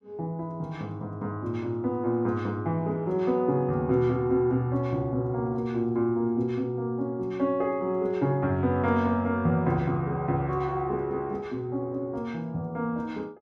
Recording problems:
none

